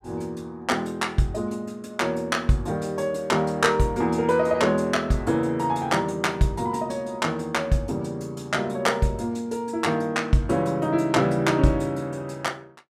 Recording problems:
none

